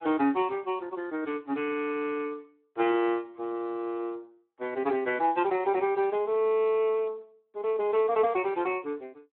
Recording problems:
phone line; 240 Hz to 3.2 kHz, Speex

